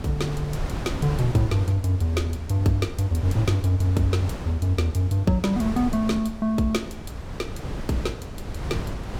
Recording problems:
hum; 50 Hz, harmonics up to 650 Hz, SNR 27 dB
wind on the microphone; below 290 Hz, SNR 9 dB

